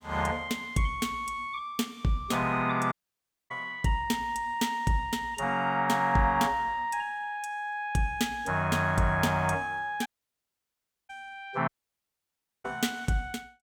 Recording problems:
audio cutting out; at 3 s for 0.5 s, at 10 s for 1 s and at 12 s for 1 s

